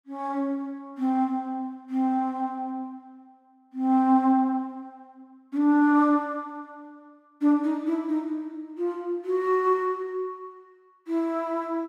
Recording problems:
none

